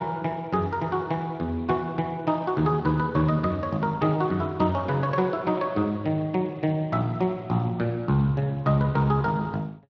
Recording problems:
lossy codec; Speex, log-spectral distance 2 dB

